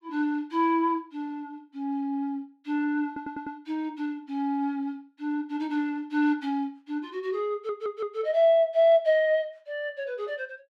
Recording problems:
stutter; at 3 s and at 7.5 s

